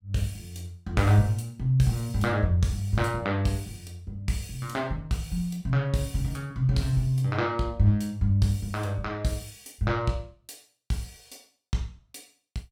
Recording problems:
none

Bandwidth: 17 kHz